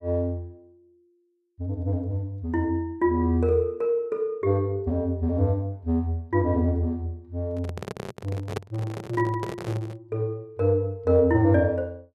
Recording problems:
microphone handling noise; from 7.5 to 10 s; peak -1 dB vs average level

